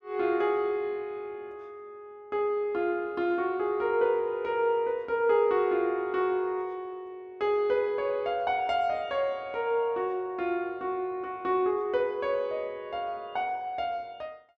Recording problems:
none

